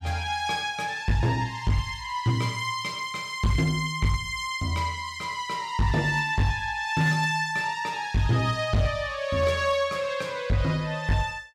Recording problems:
distortion; hard clipping, signal-to-distortion ratio 10 dB

